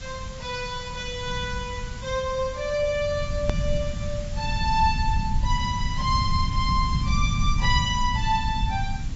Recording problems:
treble cut off; nothing above 6.3 kHz
lossy codec; AAC, log-spectral distance 5 dB
background hiss; slope 0 dB per octave, SNR 16 dB
rumble; below 110 Hz, SNR 2 dB
edit click; at 3.5 s

